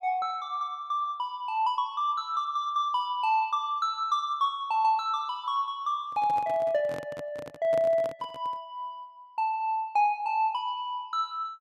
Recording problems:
microphone handling noise; from 6 to 8.5 s; peak -8 dB vs average level

